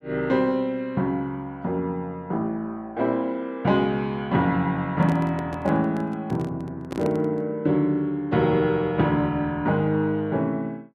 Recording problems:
microphone handling noise; from 5 to 7.5 s; peak -4 dB vs average level

